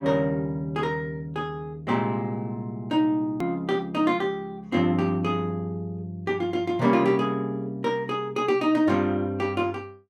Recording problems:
click at an edit; at 3.5 s

